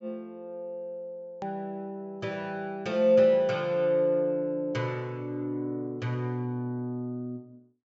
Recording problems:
treble missing; nothing above 7.5 kHz
click at an edit; at 1.5 s

